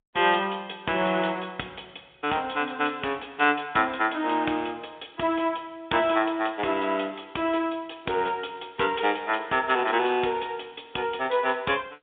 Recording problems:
phone line; 260 Hz to 3.6 kHz, G.711

